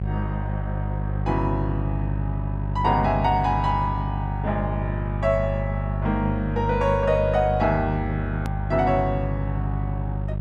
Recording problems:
electrical hum; 50 Hz, harmonics up to 600 Hz, SNR 2 dB
hard cut with a click; at 8.5 s

